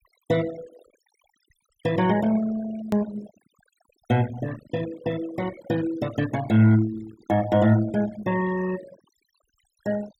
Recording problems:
noise reduction artefacts; signal-to-artefact ratio 16 dB
click at an edit; at 3 s

